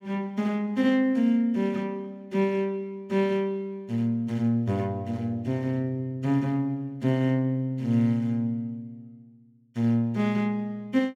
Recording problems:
none

